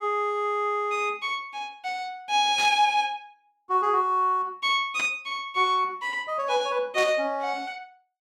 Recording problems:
static burst; at 2.5 s, at 5 s and at 7 s; peak -4 dB vs average level

